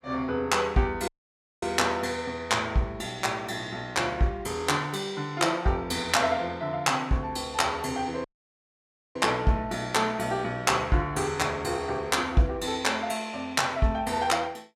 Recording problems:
dropout; at 1 s for 0.5 s and at 8 s for 1 s

